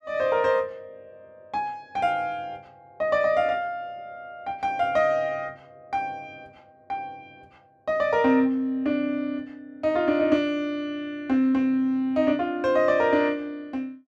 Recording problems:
none

